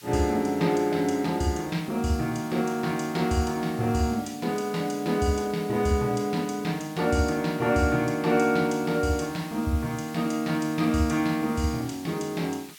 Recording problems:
background hiss; SNR 20 dB

